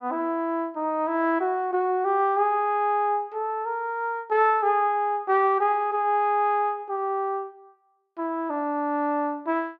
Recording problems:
none

